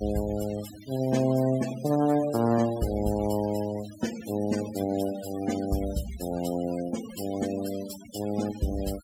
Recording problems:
noise reduction artefacts; signal-to-artefact ratio 14 dB

